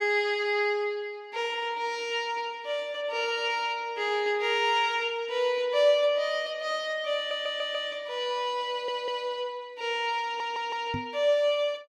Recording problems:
audio stuttering; at 7 s, at 8.5 s and at 10 s
microphone bump; at 11 s; peak -3 dB vs average level

